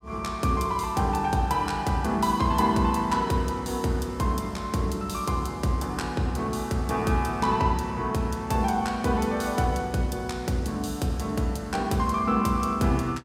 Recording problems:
none

